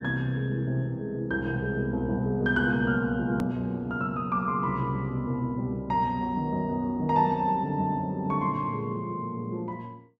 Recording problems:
click at an edit; at 3.5 s

